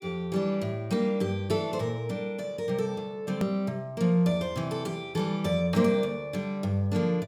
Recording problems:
edit click; at 3.5 s

